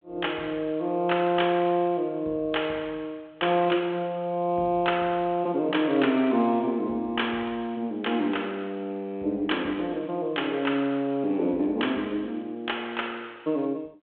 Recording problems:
phone line; 220 Hz to 3.4 kHz, G.726

